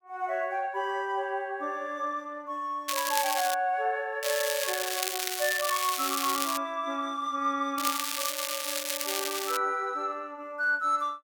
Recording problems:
crackle; at 3 s, from 4 to 6.5 s and from 8 to 9.5 s; loose cable, SNR 1 dB

